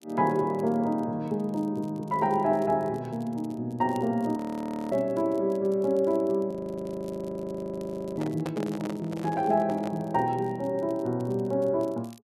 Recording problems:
crackle; vinyl, SNR 30 dB
frozen audio; at 4.5 s for 0.5 s and at 6.5 s for 1.5 s
handling noise; from 8 to 10 s; peak -3 dB vs average level

